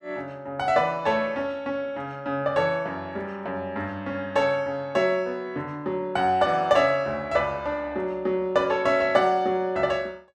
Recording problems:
none

